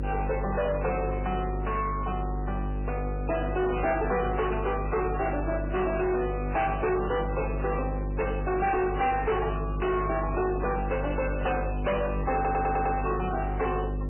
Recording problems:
lossy compression; MP3, log-spectral distance 4 dB, nothing above 2.7 kHz
distorted audio; soft clipping, signal-to-distortion ratio 8 dB
hum; 50 Hz, harmonics up to 1.1 kHz, SNR 4 dB
audio stuttering; at 12 s

